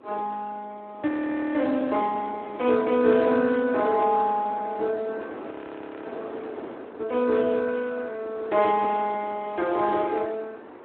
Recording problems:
phone line; 260 Hz to 3 kHz, Speex
wind noise; below 800 Hz, SNR 16 dB
frozen audio; at 1 s and at 5.5 s for 0.5 s

